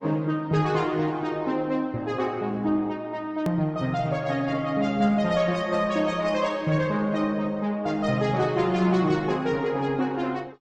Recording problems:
codec artefacts; MP3, then Opus, log-spectral distance 2 dB, nothing above 17.1 kHz
edit click; at 3.5 s

